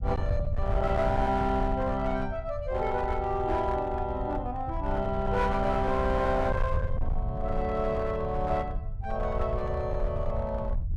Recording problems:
distortion; hard clipping, uneven, signal-to-distortion ratio 11 dB
low-frequency rumble; below 90 Hz, SNR 5 dB

